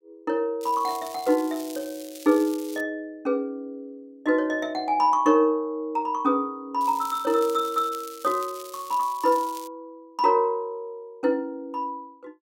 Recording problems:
crackling; from 0.5 to 3 s and from 7 to 9.5 s; loose cable, SNR 17 dB

